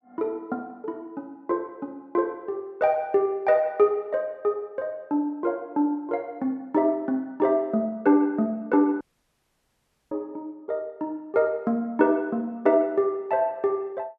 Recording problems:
dropout; at 9 s for 1 s

